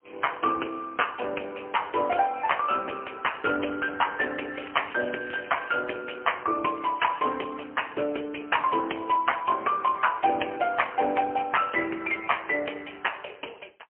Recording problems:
phone line; 260 Hz to 3 kHz, AMR-NB, then MP3
crackle; from 4.5 to 6 s; loose cable, SNR 18 dB

